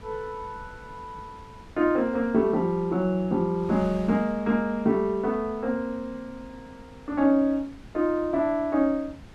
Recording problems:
wind noise; below 430 Hz, SNR 22 dB

